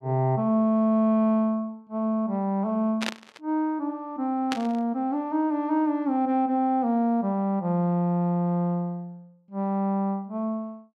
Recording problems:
static burst; at 3 s and at 4.5 s; peak 0 dB vs average level

